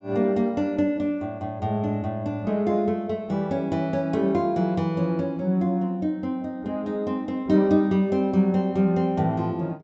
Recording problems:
treble cut off; nothing above 8 kHz

